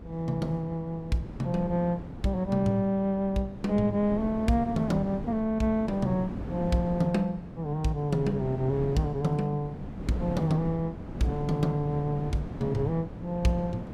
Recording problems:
wind on the microphone; below 310 Hz, SNR 10 dB

